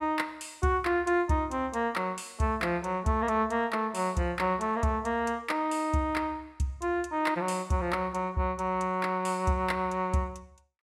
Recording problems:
none

